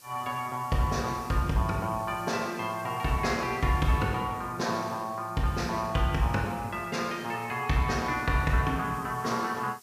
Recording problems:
hiss; SNR 22 dB

